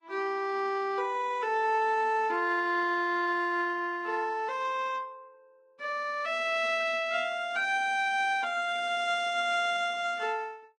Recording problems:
lossy compression; Vorbis, log-spectral distance 2 dB

